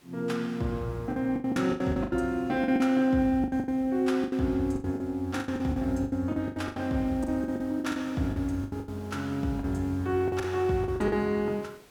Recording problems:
hiss; SNR 26 dB
packet loss; 16% of the sound replaced, filled with the last packet

